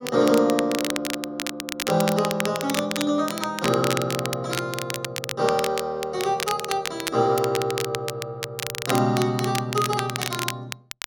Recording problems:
crackle; vinyl, SNR 6 dB

